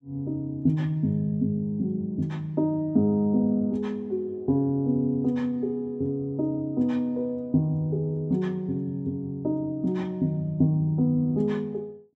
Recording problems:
none

